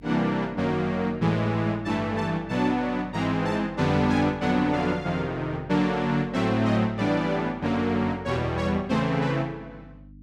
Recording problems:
hum; 50 Hz, harmonics up to 300 Hz, SNR 21 dB

